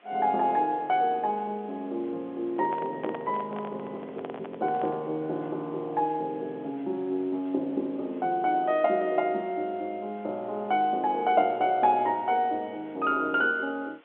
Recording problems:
phone line; 240 Hz to 3.8 kHz, G.711
background hiss; SNR 30 dB
microphone handling noise; from 2.5 to 5 s; peak -6 dB vs average level

